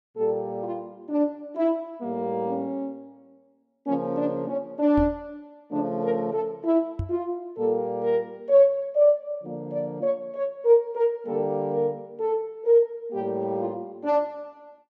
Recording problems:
microphone thump; at 5 s and at 7 s; peak -1 dB vs average level

